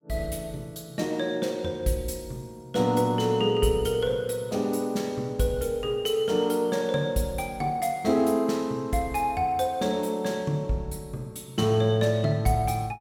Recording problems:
none

